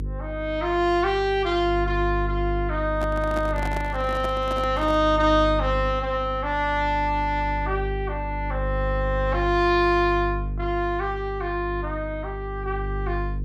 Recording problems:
electrical hum; 50 Hz, harmonics up to 450 Hz, SNR 7 dB
microphone handling noise; from 3 to 5 s; peak -5 dB vs average level

